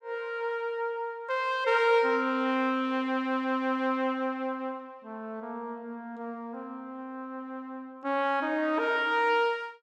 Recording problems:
none

